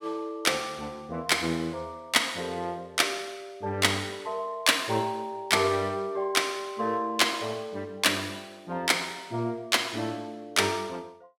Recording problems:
none

